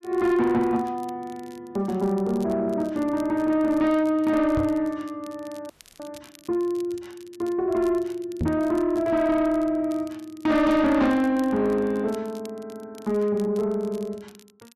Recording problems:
distortion; soft clipping, signal-to-distortion ratio 11 dB
crackling; vinyl, SNR 27 dB
knock on the microphone; at 4.5 s and at 8.5 s; peak +1 dB vs average level
audio freezing; at 5.5 s

